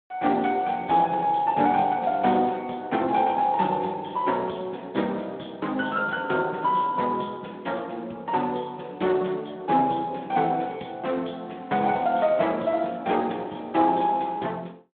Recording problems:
phone line; 170 Hz to 3.5 kHz, Speex

